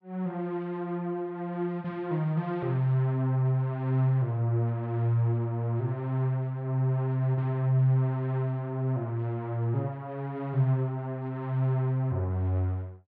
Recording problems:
none

